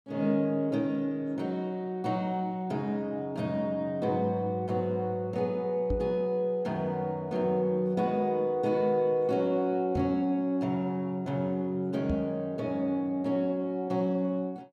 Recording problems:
knock on the microphone; at 6 s, at 10 s and at 12 s; peak 0 dB vs average level

